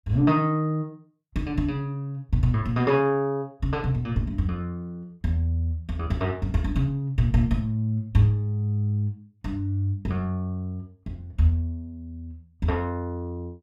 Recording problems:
none

